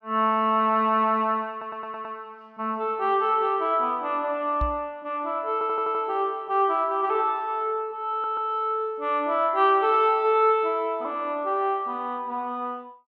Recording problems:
audio stuttering; at 1.5 s, at 5.5 s and at 8 s
microphone thump; at 4.5 s; peak -1 dB vs average level

